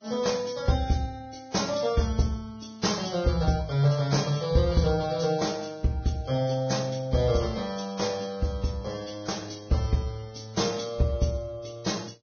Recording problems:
lossy codec; Vorbis, log-spectral distance 4 dB, nothing above 6.5 kHz

